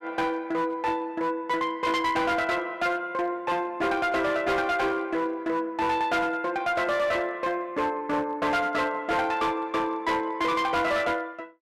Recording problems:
distortion; hard clipping, uneven, signal-to-distortion ratio 11 dB

